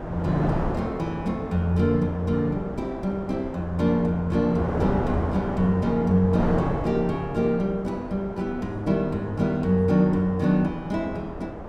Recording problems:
wind noise; below 680 Hz, SNR 8 dB

